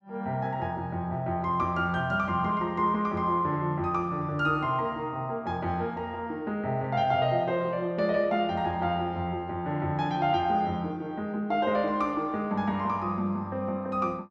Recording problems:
none

